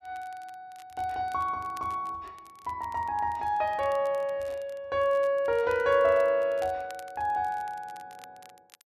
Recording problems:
crackle; vinyl, SNR 27 dB

